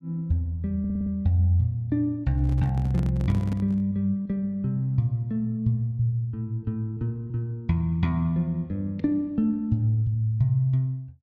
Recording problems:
stutter; at 1 s
handling noise; from 2.5 to 4 s; peak -5 dB vs average level

